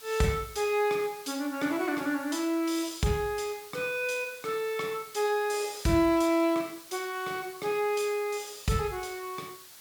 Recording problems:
background hiss; slope +1 dB per octave, SNR 17 dB

